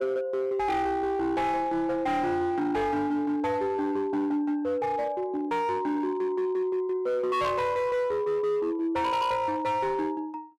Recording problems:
distorted audio; hard clipping, signal-to-distortion ratio 11 dB

